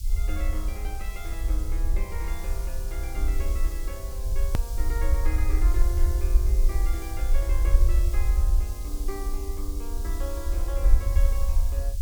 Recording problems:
background hiss; SNR 5 dB
low-frequency rumble; below 56 Hz, SNR -11 dB
click at an edit; at 4.5 s

